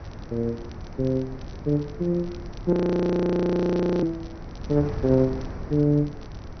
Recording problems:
treble missing; nothing above 6.1 kHz
wind noise; below 290 Hz, SNR 14 dB
crackling; vinyl, SNR 29 dB
frozen audio; at 2.5 s for 1.5 s

